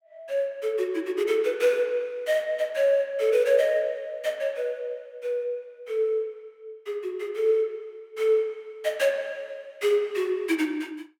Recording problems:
none

